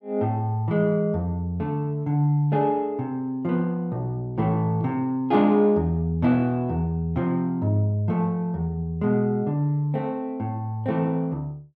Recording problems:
none

